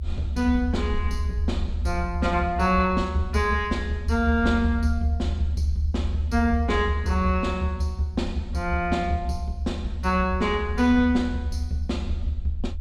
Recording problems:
rumble; below 76 Hz, strongest tone 76 Hz, SNR 5 dB

